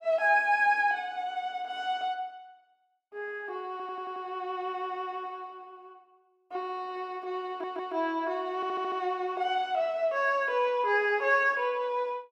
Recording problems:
audio stuttering; at 3.5 s, at 7.5 s and at 8.5 s

